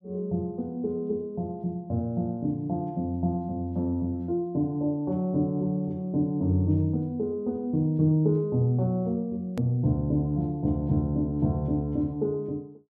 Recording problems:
hard cut with a click; at 9.5 s

